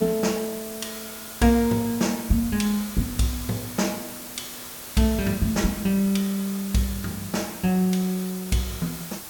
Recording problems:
hiss; slope -2 dB per octave, SNR 11 dB

